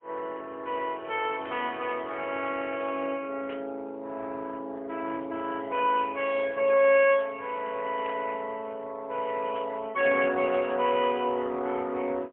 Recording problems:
phone line; 220 Hz to 3.3 kHz, AMR-NB, then MP3
static burst; 4 times, first at 1.5 s; peak -11 dB vs average level

